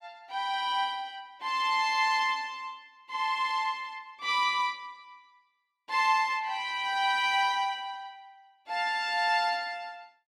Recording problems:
none

